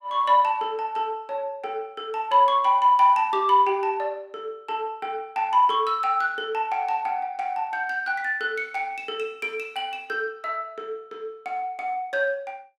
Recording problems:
none

